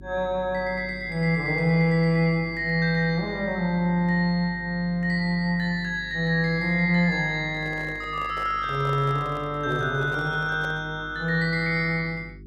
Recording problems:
hum; 50 Hz, harmonics up to 400 Hz, SNR 20 dB
handling noise; from 7.5 to 11 s; peak -10 dB vs average level

